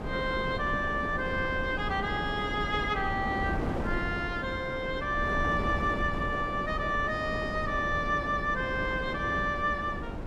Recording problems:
wind on the microphone; below 460 Hz, SNR 5 dB

